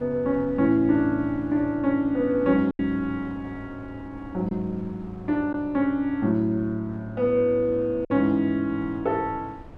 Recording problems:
wind on the microphone; below 410 Hz, SNR 21 dB
lost packets; 1.7% of the sound replaced, filled with silence

